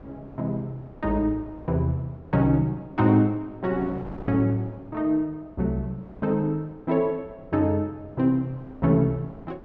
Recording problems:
electrical hum; 50 Hz, harmonics up to 1.3 kHz, SNR 29 dB
wind noise; below 540 Hz, SNR 20 dB

